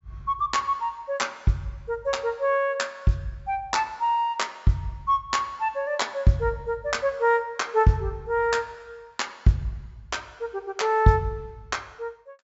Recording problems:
treble missing; nothing above 8 kHz

